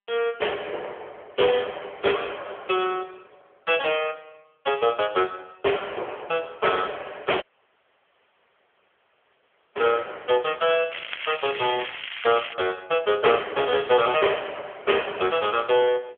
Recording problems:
telephone audio; 320 Hz to 3.4 kHz, AMR-NB
audio cutting out; at 7.5 s for 2.5 s
crackle; from 11 to 13 s; loose cable, SNR 8 dB

